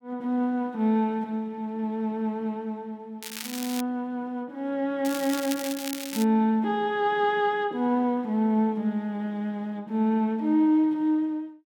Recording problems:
crackle; at 3 s and from 5 to 6 s; loose cable, SNR 10 dB

